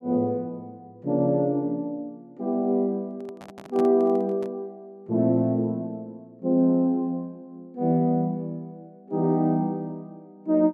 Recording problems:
microphone handling noise; from 3 to 4.5 s; peak -9 dB vs average level

